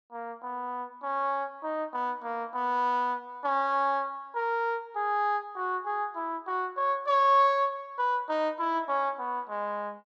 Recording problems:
none

